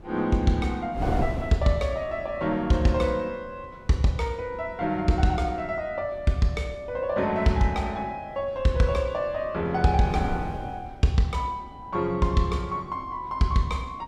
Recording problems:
wind on the microphone; below 330 Hz, SNR 13 dB

